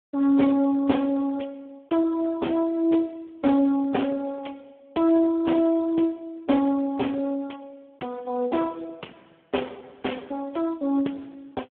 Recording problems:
phone line; 220 Hz to 3.5 kHz, Speex

